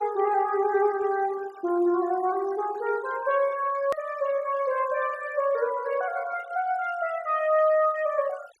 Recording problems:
noise reduction artefacts; signal-to-artefact ratio 21 dB
click at an edit; at 4 s

